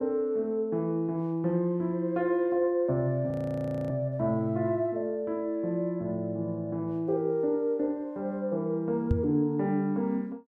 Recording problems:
audio freezing; at 3.5 s for 0.5 s
microphone bump; at 9 s; peak +6 dB vs average level

